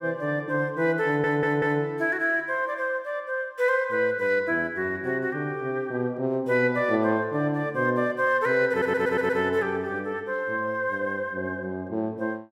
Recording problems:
audio stuttering; at 1 s and at 8.5 s

